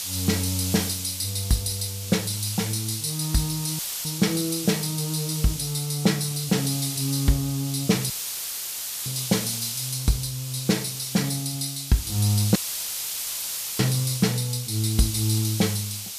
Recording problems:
hiss; SNR 5 dB
audio cutting out; at 4 s, at 8 s for 1 s and at 13 s for 1 s; filled with static

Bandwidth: 14.5 kHz